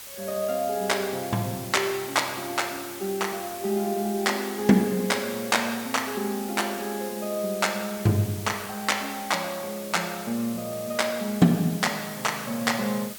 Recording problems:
hiss; slope +1 dB per octave, SNR 12 dB

